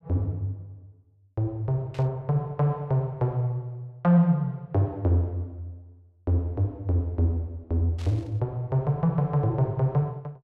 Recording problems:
burst of static; at 2 s and at 8 s; peak -15 dB vs average level

